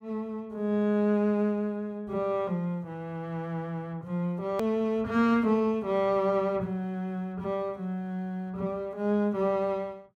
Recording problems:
click at an edit; at 4.5 s

